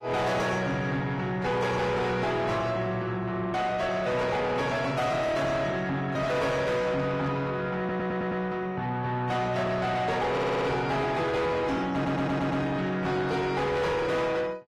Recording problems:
lossy compression; AAC, log-spectral distance 2 dB, nothing above 15.1 kHz
distorted audio; soft clipping, signal-to-distortion ratio 6 dB
stutter; at 8 s, at 10 s and at 12 s

